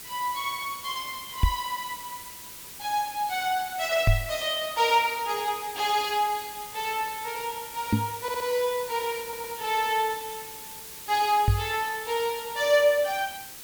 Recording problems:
background hiss; slope 0 dB per octave, SNR 11 dB
knock on the microphone; 4 times, first at 1.5 s; peak +9 dB vs average level
audio stuttering; at 8 s and at 9 s

